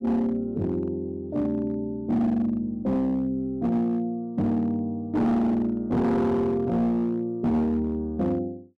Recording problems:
distorted audio; hard clipping, signal-to-distortion ratio 11 dB

